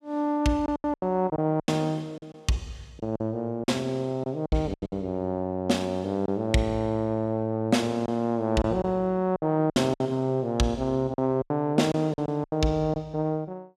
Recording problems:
lost packets; 9% of the sound replaced, filled with silence

